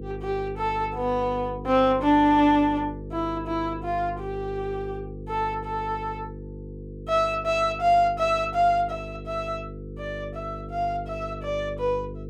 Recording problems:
hum; 50 Hz, harmonics up to 500 Hz, SNR 13 dB

